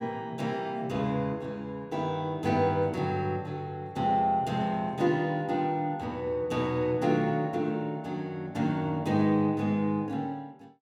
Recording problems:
none

